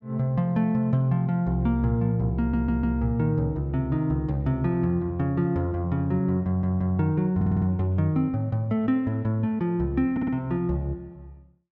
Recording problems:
audio stuttering; 4 times, first at 2.5 s

